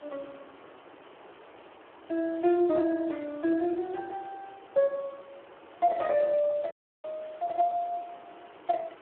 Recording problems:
telephone audio; 220 Hz to 2.8 kHz, Speex
background hiss; SNR 21 dB
dropout; at 6.5 s

